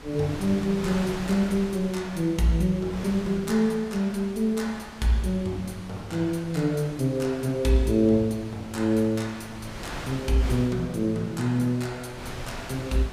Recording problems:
wind noise; below 1.9 kHz, SNR 14 dB

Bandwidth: 15.5 kHz